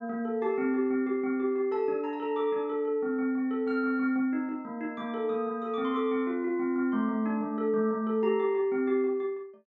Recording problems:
low-pass filter; nothing above 8 kHz

